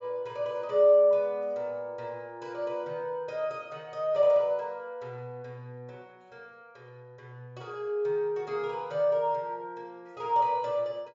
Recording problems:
treble cut off; nothing above 8 kHz

